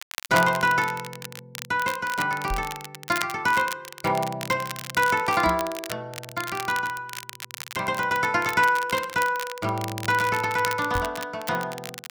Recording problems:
crackle; vinyl, SNR 12 dB
microphone bump; at 2.5 s, at 5.5 s and at 11 s; peak -4 dB vs average level

